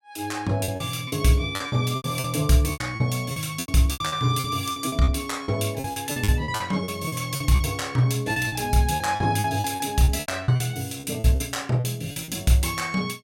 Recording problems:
lost packets; 15% of the sound replaced, filled with repeated pitch periods

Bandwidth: 16.5 kHz